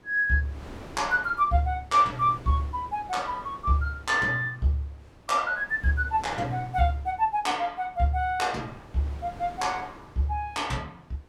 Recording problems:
wind noise; below 860 Hz, SNR 20 dB

